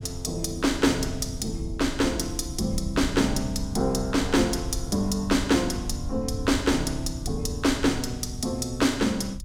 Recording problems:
low-frequency rumble; below 98 Hz, SNR 10 dB

